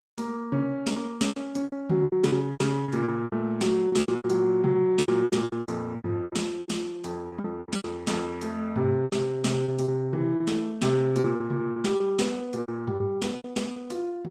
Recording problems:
codec artefacts; Opus, log-spectral distance 3 dB, nothing above 18.3 kHz
lost packets; 16% of the sound replaced, filled with repeated pitch periods

